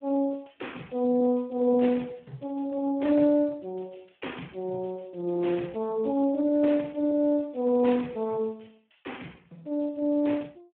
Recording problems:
telephone audio; 170 Hz to 3.4 kHz, Speex

